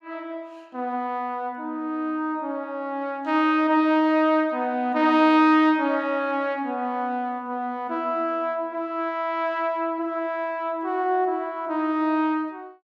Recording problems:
none

